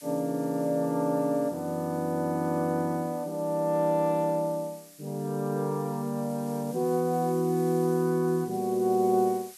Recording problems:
hiss; slope +4 dB per octave, SNR 21 dB

